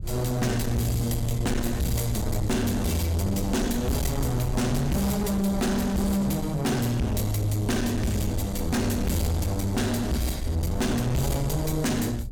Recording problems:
distorted audio; soft clipping, signal-to-distortion ratio 8 dB
low-frequency rumble; below 110 Hz, SNR 9 dB
wind on the microphone; below 180 Hz, SNR 15 dB

